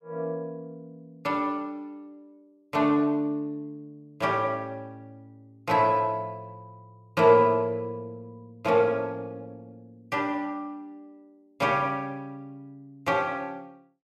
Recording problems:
none

